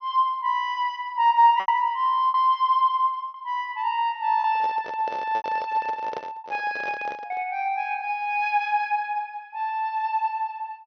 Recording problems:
treble cut off; nothing above 6.1 kHz
packet loss; 4% of the sound replaced, filled with repeated pitch periods
handling noise; from 4.5 to 7.5 s; peak -6 dB vs average level

